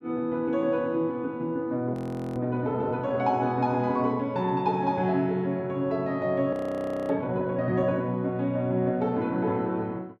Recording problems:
audio freezing; at 2 s and at 6.5 s for 0.5 s

